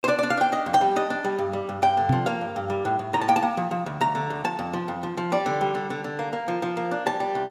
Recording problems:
microphone thump; at 2 s; peak +6 dB vs average level

